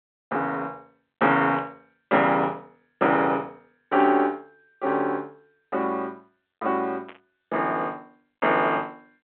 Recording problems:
telephone audio; 240 Hz to 4 kHz, G.726
burst of static; at 1.5 s, at 4 s and at 7 s; peak -13 dB vs average level

